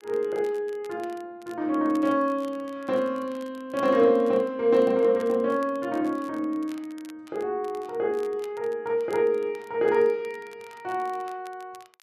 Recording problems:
crackling; vinyl, SNR 28 dB

